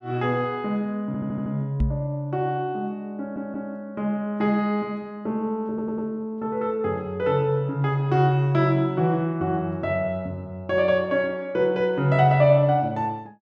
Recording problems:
stutter; at 1 s, at 3 s and at 5.5 s
microphone bump; at 2 s; peak +4 dB vs average level

